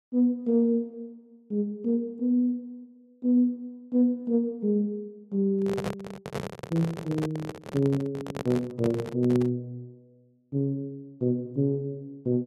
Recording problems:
microphone handling noise; from 5.5 to 9.5 s; peak 0 dB vs average level

